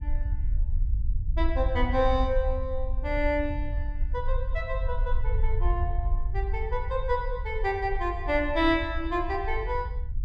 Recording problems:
rumble; below 60 Hz, SNR 2 dB

